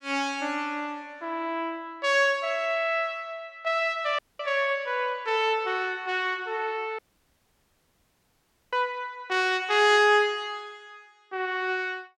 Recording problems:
dropout; at 4 s and at 7 s for 1.5 s

